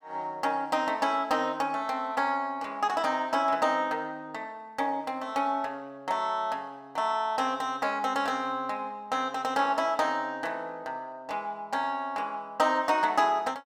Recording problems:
none

